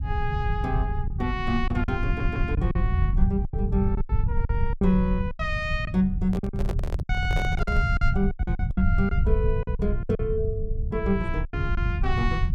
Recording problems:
rumble; below 96 Hz, SNR -1 dB
lost packets; 11% of the sound replaced, filled with silence
audio stuttering; at 2 s
microphone handling noise; from 6.5 to 8 s; peak -2 dB vs average level

